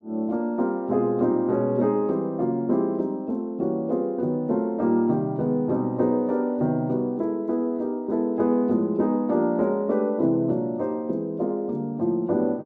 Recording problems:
none

